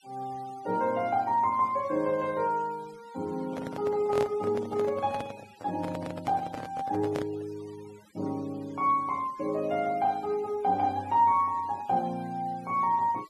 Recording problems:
noise reduction artefacts; signal-to-artefact ratio 24 dB
microphone handling noise; from 3.5 to 7.5 s; peak -1 dB vs average level

